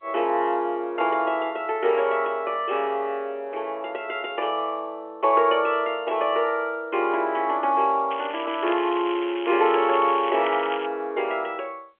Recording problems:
phone line; 320 Hz to 3.3 kHz, G.711
crackle; from 8 to 11 s; loose cable, SNR 13 dB

